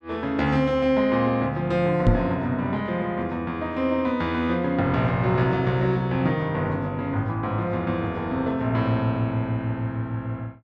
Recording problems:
microphone bump; at 2 s; peak +8 dB vs average level

